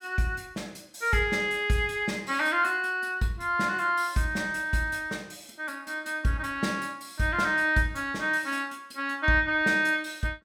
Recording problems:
none

